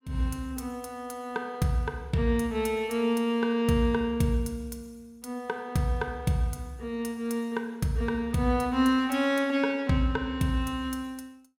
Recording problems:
none

